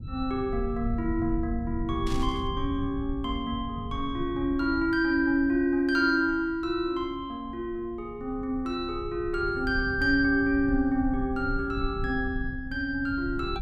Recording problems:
rumble; below 100 Hz, SNR 10 dB
static burst; at 2 s; peak -9 dB vs average level

